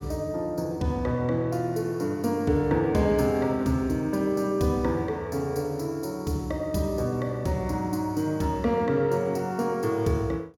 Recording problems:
none

